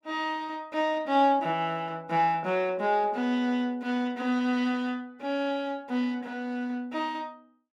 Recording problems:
none

